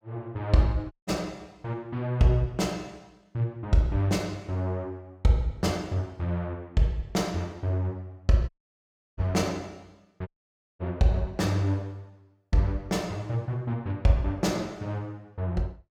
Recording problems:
dropout; at 1 s, at 8.5 s for 0.5 s and at 10 s for 0.5 s

